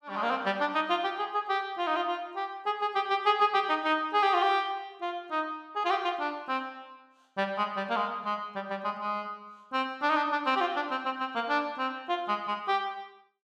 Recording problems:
none

